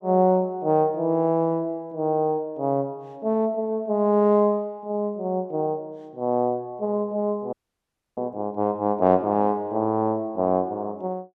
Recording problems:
audio freezing; at 7.5 s for 0.5 s

